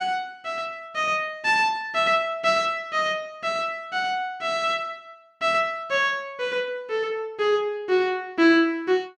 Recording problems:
none

